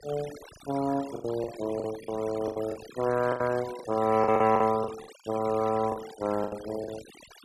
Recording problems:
denoising artefacts; signal-to-artefact ratio 16 dB
lost packets; 12% of the sound replaced, filled with the last packet

